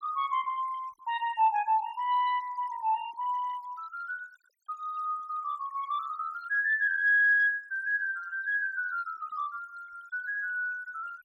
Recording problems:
noise reduction artefacts; signal-to-artefact ratio 23 dB

